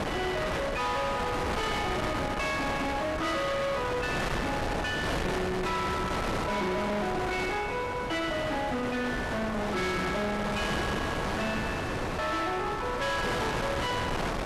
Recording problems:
distorted audio; hard clipping, signal-to-distortion ratio 8 dB
wind noise; below 1.6 kHz, SNR 2 dB

